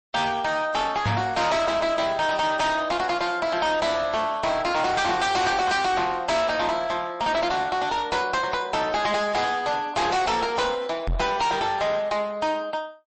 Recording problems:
codec artefacts; MP3, log-spectral distance 3 dB, nothing above 8.2 kHz
distortion; hard clipping, uneven, signal-to-distortion ratio 6 dB
microphone thump; at 1 s and at 11 s; peak +4 dB vs average level

